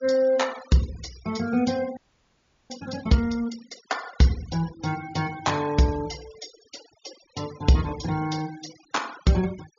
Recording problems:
treble cut off; nothing above 7.2 kHz
noise reduction artefacts; signal-to-artefact ratio 18 dB
frozen audio; at 2 s for 0.5 s

